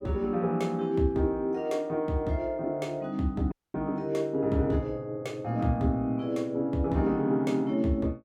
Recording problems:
audio cutting out; at 3.5 s

